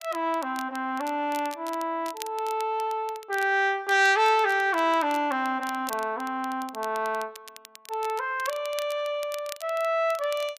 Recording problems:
crackling; vinyl, SNR 18 dB

